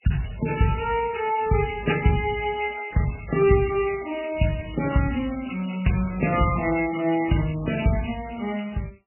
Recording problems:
lossy codec; MP3, then MP3, log-spectral distance 9 dB, nothing above 2.8 kHz

